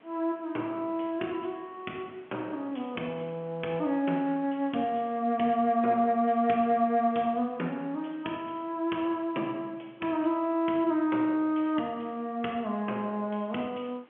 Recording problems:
telephone audio; 190 Hz to 3.3 kHz, G.711
background hiss; SNR 29 dB

